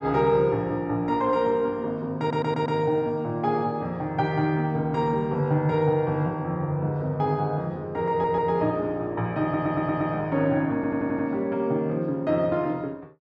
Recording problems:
audio stuttering; 4 times, first at 2 s

